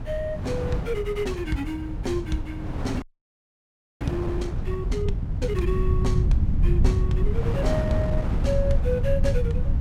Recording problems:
low-frequency rumble; below 110 Hz, SNR -3 dB
wind on the microphone; below 410 Hz, SNR 5 dB
audio freezing; at 3 s for 1 s

